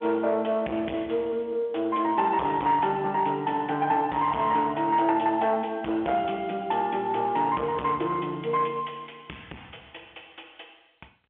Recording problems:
phone line; 280 Hz to 3.3 kHz, G.711
distorted audio; soft clipping, signal-to-distortion ratio 9 dB

